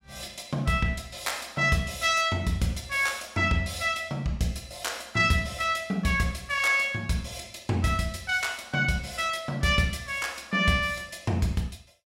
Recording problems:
none

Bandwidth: 16 kHz